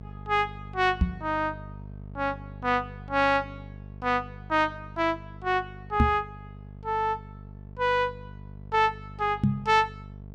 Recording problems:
hum; 50 Hz, harmonics up to 700 Hz, SNR 16 dB
microphone thump; at 1 s, at 6 s and at 9.5 s; peak +8 dB vs average level

